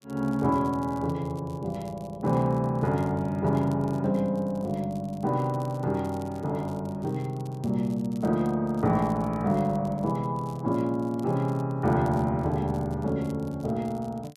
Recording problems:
crackling; vinyl, SNR 28 dB

